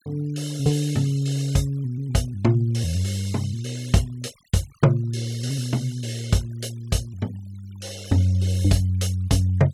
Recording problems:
denoising artefacts; signal-to-artefact ratio 23 dB

